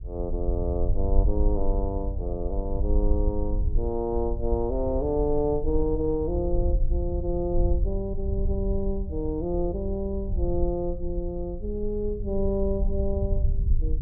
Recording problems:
rumble; below 62 Hz, SNR 1 dB

